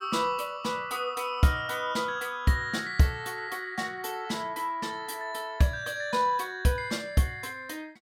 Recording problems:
none

